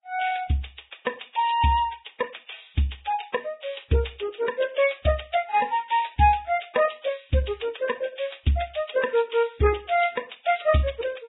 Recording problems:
codec artefacts; AAC, then Vorbis, log-spectral distance 9 dB, nothing above 3.8 kHz

